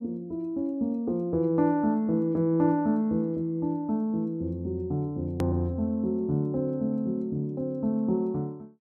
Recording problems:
click at an edit; at 5.5 s

